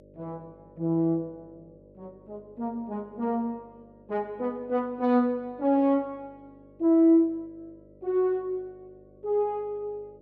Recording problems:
hum; 50 Hz, harmonics up to 600 Hz, SNR 28 dB

